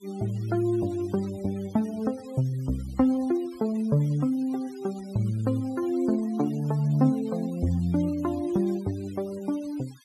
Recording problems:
noise reduction artefacts; signal-to-artefact ratio 23 dB

